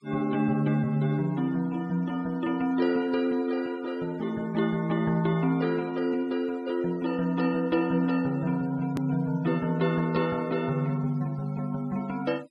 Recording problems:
denoising artefacts; signal-to-artefact ratio 25 dB
click at an edit; at 9 s

